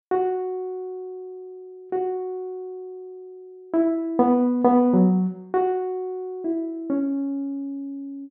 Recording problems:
none

